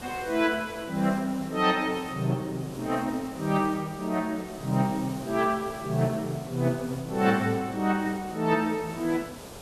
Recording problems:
hiss; SNR 15 dB

